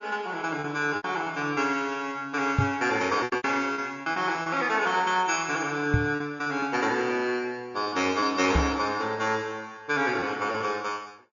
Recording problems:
treble cut off; nothing above 6.9 kHz
lossy codec; Vorbis, log-spectral distance 2 dB
packet loss; 6% of the sound replaced, filled with repeated pitch periods
knock on the microphone; at 2.5 s, at 6 s and at 8.5 s; peak +7 dB vs average level

